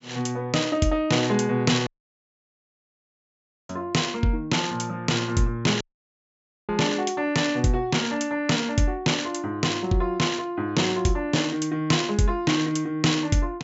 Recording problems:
treble missing; nothing above 8 kHz
audio cutting out; at 2 s for 2 s and at 6 s for 1 s

